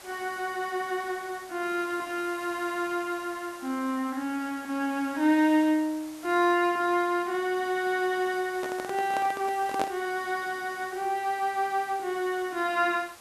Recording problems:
hiss; SNR 19 dB
microphone handling noise; from 8.5 to 10 s; peak +1 dB vs average level

